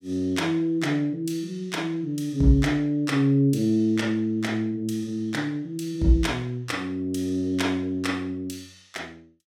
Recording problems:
none

